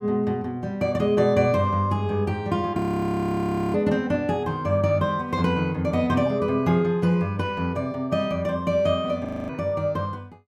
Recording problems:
frozen audio; at 3 s for 1 s and at 9.5 s

